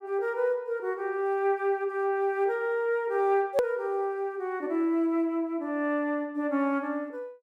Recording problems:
edit click; at 3.5 s

